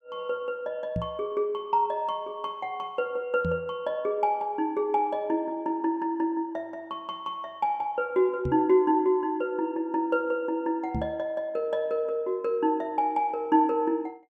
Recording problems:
microphone thump; 4 times, first at 1 s; peak 0 dB vs average level

